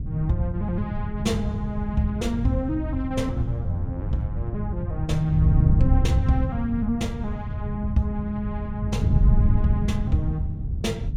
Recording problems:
wind on the microphone; below 120 Hz, SNR -2 dB

